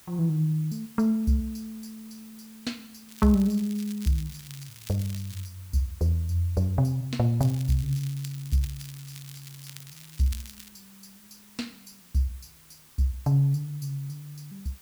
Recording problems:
hiss; slope 0 dB per octave, SNR 23 dB
crackling; from 3 to 5.5 s and from 7.5 to 11 s; loose cable, SNR 18 dB

